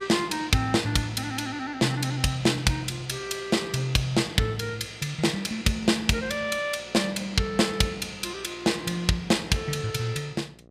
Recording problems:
hum; 60 Hz, harmonics up to 1.3 kHz, SNR 27 dB

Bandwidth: 15.5 kHz